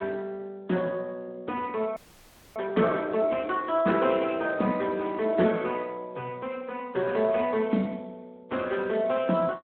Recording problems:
phone line; 220 Hz to 3.7 kHz, Speex
audio freezing; at 2 s for 0.5 s

